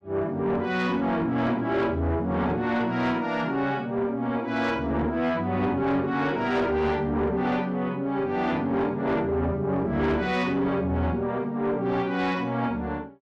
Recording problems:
distortion; soft clipping, signal-to-distortion ratio 12 dB

